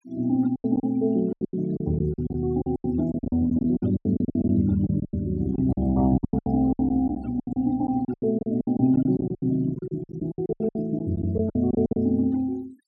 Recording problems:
noise reduction artefacts; signal-to-artefact ratio 27 dB
packet loss; 20% of the sound replaced, filled with silence

